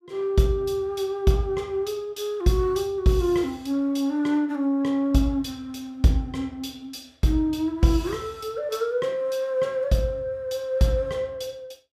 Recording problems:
none

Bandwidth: 15.5 kHz